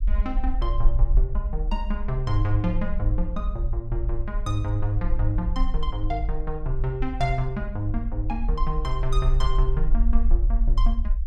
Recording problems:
rumble; below 48 Hz, SNR -2 dB

